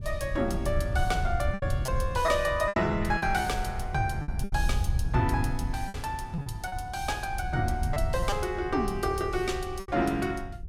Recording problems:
wind on the microphone; below 94 Hz, SNR 4 dB
packet loss; 7% of the sound replaced, filled with repeated pitch periods

